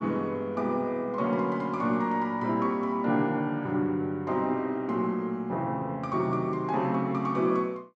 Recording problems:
none

